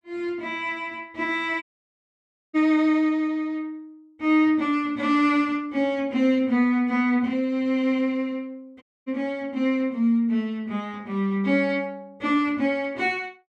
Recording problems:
audio cutting out; at 1.5 s for 1 s and at 9 s

